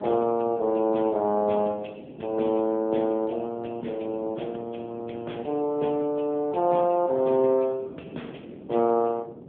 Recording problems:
telephone audio; 170 Hz to 3.4 kHz, AMR-NB
wind noise; below 440 Hz, SNR 19 dB

